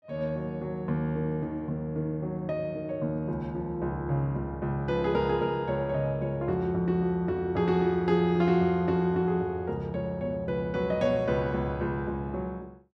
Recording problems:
none

